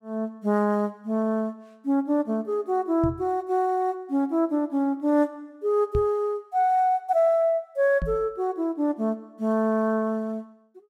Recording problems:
microphone thump; at 3 s, at 6 s and at 8 s; peak 0 dB vs average level

